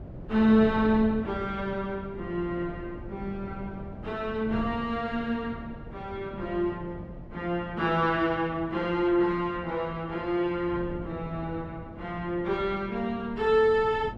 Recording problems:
wind noise; below 300 Hz, SNR 14 dB

